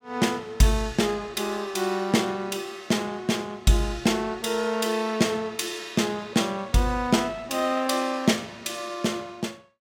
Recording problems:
none

